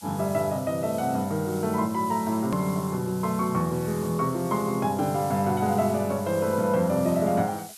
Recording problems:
hiss; SNR 17 dB
edit click; at 2.5 s

